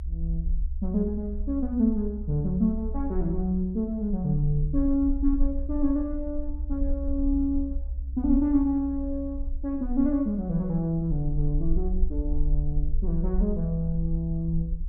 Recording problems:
rumble; below 64 Hz, SNR 5 dB

